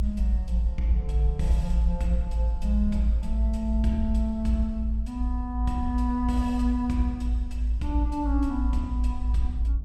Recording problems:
low-frequency rumble; below 58 Hz, strongest tone 54 Hz, SNR -3 dB

